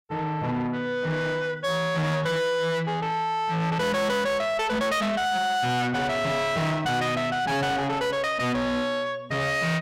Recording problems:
distortion; soft clipping, signal-to-distortion ratio 7 dB

